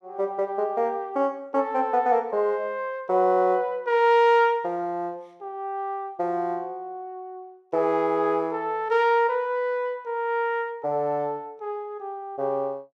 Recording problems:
none

